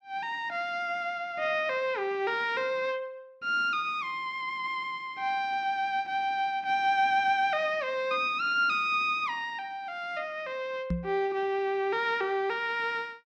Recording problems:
microphone bump; at 11 s; peak +2 dB vs average level

